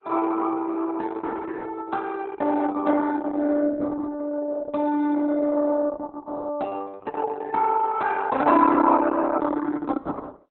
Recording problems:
lossy compression; Opus, log-spectral distance 4 dB, nothing above 4 kHz

